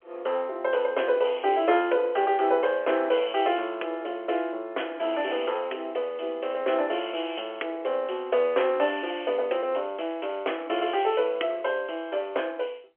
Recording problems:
phone line; 340 Hz to 3.3 kHz, G.711

